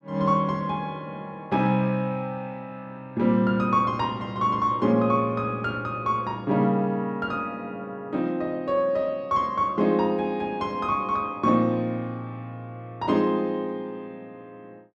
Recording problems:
none

